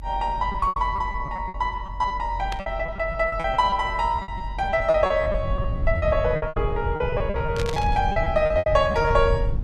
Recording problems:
low-frequency rumble; below 100 Hz, SNR 7 dB
packet loss; 16% of the sound replaced, filled with repeated pitch periods
burst of static; at 2.5 s and at 7.5 s; peak -4 dB vs average level

